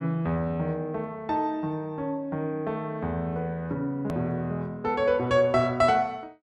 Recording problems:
edit click; at 4 s

